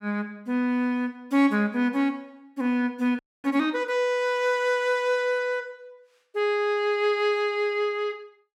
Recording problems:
frozen audio; at 3 s

